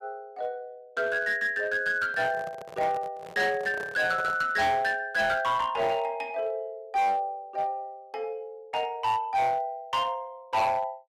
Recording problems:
distorted audio; hard clipping, uneven, signal-to-distortion ratio 11 dB
handling noise; from 2 to 4.5 s; peak -8 dB vs average level

